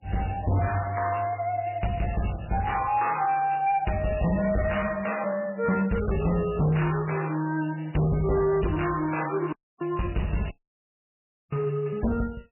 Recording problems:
codec artefacts; MP3, log-spectral distance 8 dB, nothing above 2.8 kHz
distortion; hard clipping, signal-to-distortion ratio 8 dB
dropout; at 9.5 s and at 11 s for 1 s

